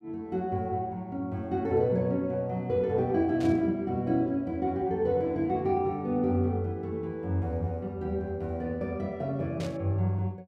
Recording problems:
burst of static; at 3.5 s and at 9.5 s; peak -11 dB vs average level

